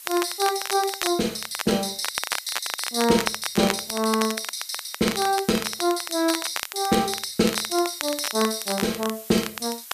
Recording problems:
hiss; slope +5 dB per octave, SNR 16 dB
crackling; vinyl, SNR 8 dB

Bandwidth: 14.5 kHz